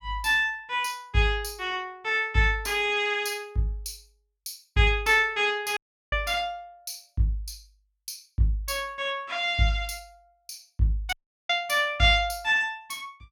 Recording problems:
audio cutting out; at 6 s and at 11 s

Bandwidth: 18 kHz